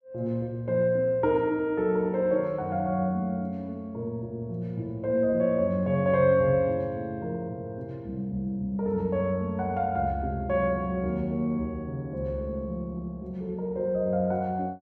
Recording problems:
none

